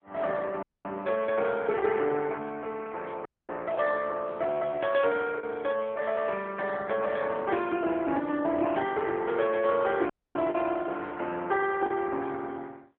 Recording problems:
telephone audio; 240 Hz to 2.8 kHz, AMR-NB
lost packets; 1.5% of the sound replaced, filled with the last packet
dropout; at 0.5 s, at 3.5 s and at 10 s

